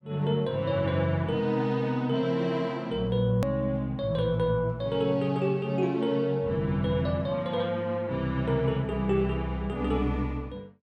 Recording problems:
click at an edit; at 3.5 s

